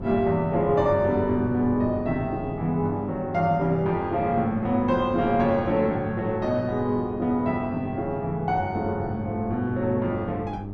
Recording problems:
mains hum; 50 Hz, harmonics up to 900 Hz, SNR 12 dB
wind on the microphone; below 320 Hz, SNR 16 dB

